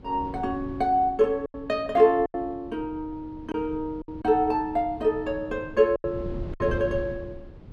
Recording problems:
wind noise; below 200 Hz, SNR 15 dB
packet loss; 5% of the sound replaced, filled with silence

